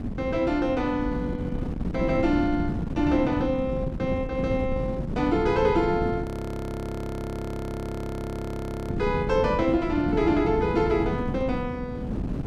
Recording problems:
wind on the microphone; below 250 Hz, SNR 5 dB
audio freezing; at 6 s for 2.5 s

